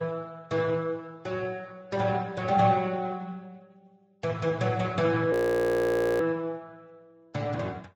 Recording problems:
lossy compression; Speex, then Vorbis, log-spectral distance 3 dB, nothing above 18.9 kHz
frozen audio; at 5.5 s for 1 s

